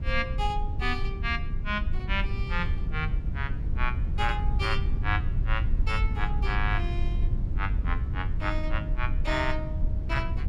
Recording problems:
rumble; below 76 Hz, SNR -2 dB

